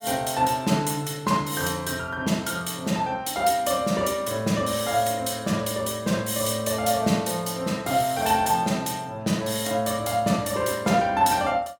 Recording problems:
none

